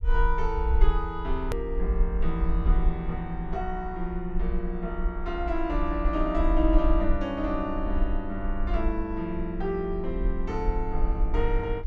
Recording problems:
low-frequency rumble; below 48 Hz, SNR 1 dB
edit click; at 1.5 s

